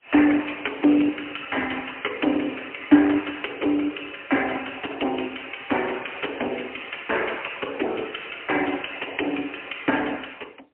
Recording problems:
phone line; 260 Hz to 3.1 kHz, AMR-NB, then MP3

